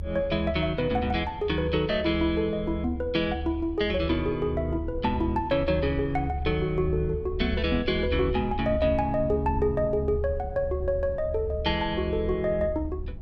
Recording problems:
rumble; below 76 Hz, strongest tone 74 Hz, SNR 8 dB

